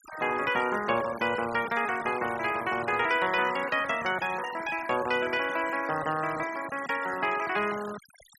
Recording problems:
noise reduction artefacts; signal-to-artefact ratio 13 dB

